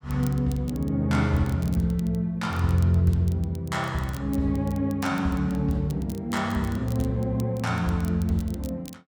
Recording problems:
crackle; vinyl, SNR 23 dB

